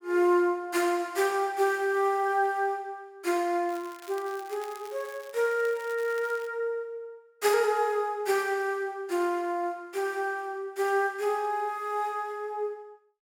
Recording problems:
crackling; from 3.5 to 6.5 s; loose cable, SNR 22 dB

